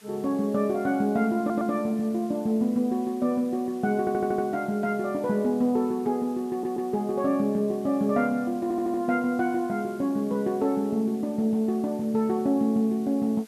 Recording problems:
hiss; slope 0 dB per octave, SNR 27 dB
audio stuttering; 4 times, first at 1.5 s

